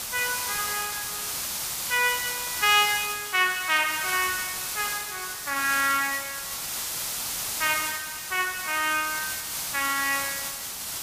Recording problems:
hiss; slope +1 dB per octave, SNR 3 dB

